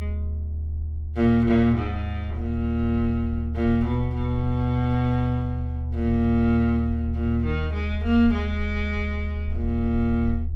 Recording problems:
hum; 60 Hz, harmonics up to 1.1 kHz, SNR 26 dB
low-frequency rumble; below 78 Hz, strongest tone 76 Hz, SNR 5 dB

